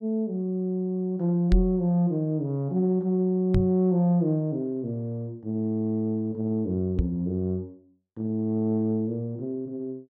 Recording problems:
microphone thump; at 1.5 s, at 3.5 s and at 7 s; peak +7 dB vs average level

